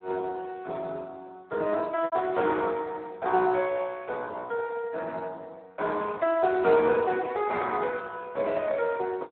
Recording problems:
telephone audio; 260 Hz to 3.7 kHz, Speex
packet loss; 0.9% of the sound replaced, filled with repeated pitch periods

